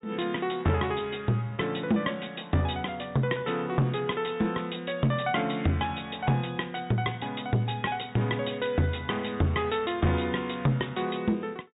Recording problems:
treble cut off; nothing above 4 kHz
distortion; soft clipping, signal-to-distortion ratio 10 dB

